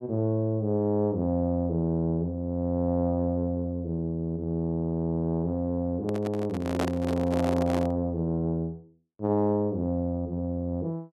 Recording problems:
handling noise; from 6 to 8 s; peak +2 dB vs average level

